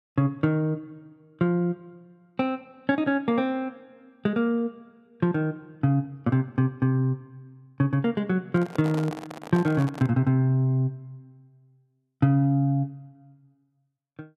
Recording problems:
microphone handling noise; from 8.5 to 10 s; peak -6 dB vs average level

